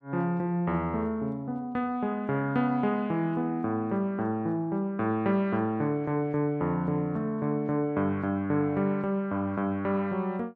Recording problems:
none

